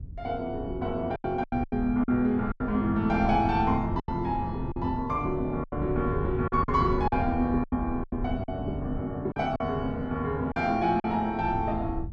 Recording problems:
wind on the microphone; below 100 Hz, SNR 10 dB
lost packets; 9% of the sound replaced, filled with silence

